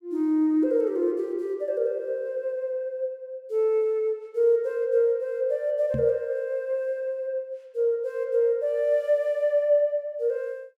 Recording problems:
microphone thump; at 6 s; peak -2 dB vs average level

